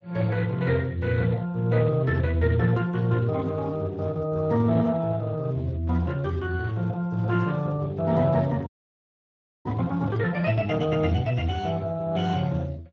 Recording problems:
codec artefacts; Speex, log-spectral distance 3 dB
frozen audio; at 8.5 s for 1 s

